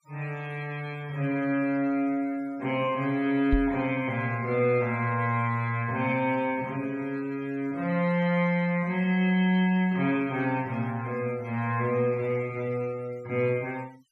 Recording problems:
noise reduction artefacts; signal-to-artefact ratio 25 dB
microphone thump; at 3.5 s; peak +3 dB vs average level

